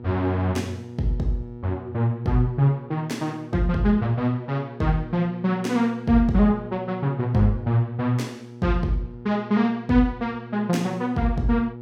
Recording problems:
hum; 60 Hz, harmonics up to 960 Hz, SNR 15 dB

